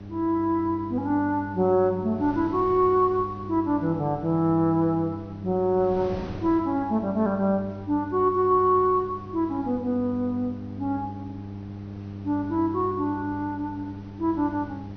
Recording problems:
treble missing; nothing above 6.2 kHz
electrical hum; 50 Hz, harmonics up to 800 Hz, SNR 14 dB
wind on the microphone; below 550 Hz, SNR 21 dB

